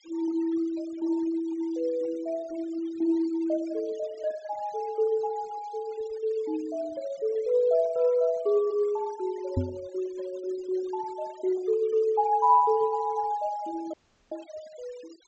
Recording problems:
treble missing; nothing above 8 kHz
noise reduction artefacts; signal-to-artefact ratio 24 dB
microphone bump; at 9.5 s; peak +4 dB vs average level
dropout; at 14 s

